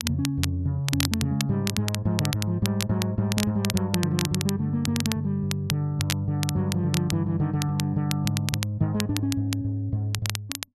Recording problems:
crackle; vinyl, SNR 7 dB

